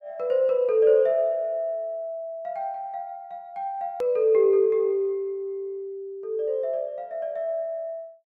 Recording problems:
hard cut with a click; at 4 s

